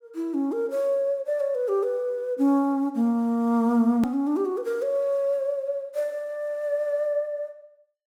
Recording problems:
hard cut with a click; at 4 s

